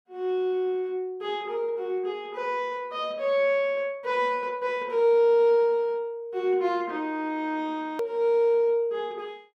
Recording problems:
hard cut with a click; at 8 s

